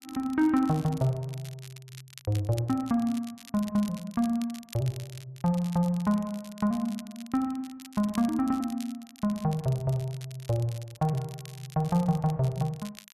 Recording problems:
crackle; vinyl, SNR 20 dB

